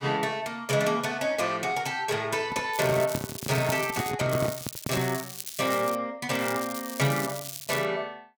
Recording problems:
handling noise; from 2.5 to 5 s; peak +1 dB vs average level
crackle; from 2.5 to 4 s, from 4.5 to 6 s and from 6.5 to 8 s; loose cable, SNR 9 dB

